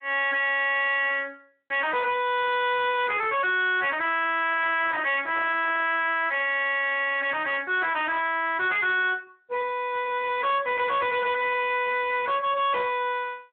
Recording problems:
telephone audio; 300 Hz to 3.9 kHz, Speex
distortion; soft clipping, signal-to-distortion ratio 7 dB
microphone handling noise; from 4.5 to 6 s; peak -8 dB vs average level

